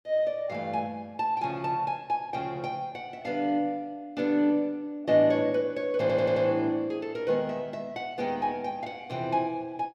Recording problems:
audio stuttering; at 6 s

